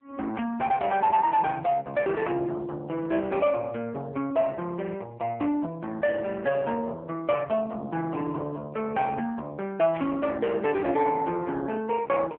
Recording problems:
phone line; 260 Hz to 3.3 kHz, AMR-NB
static burst; at 10 s; peak -11 dB vs average level

